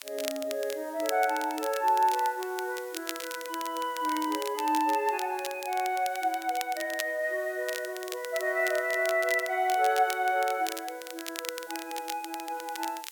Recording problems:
background hiss; slope +2 dB per octave, SNR 21 dB
crackling; vinyl, SNR 11 dB

